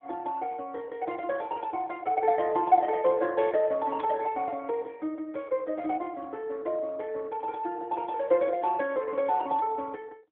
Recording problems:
phone line; 190 Hz to 3.3 kHz, AMR-NB

